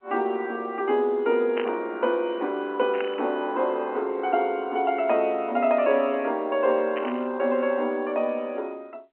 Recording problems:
telephone audio; 240 Hz to 3.1 kHz, G.711
burst of static; at 1.5 s, at 3 s and at 7 s; peak -5 dB vs average level

